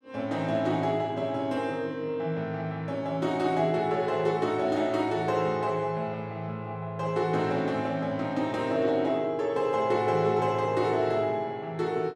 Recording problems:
none

